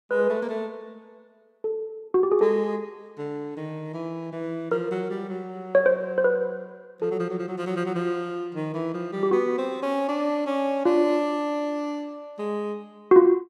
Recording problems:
none

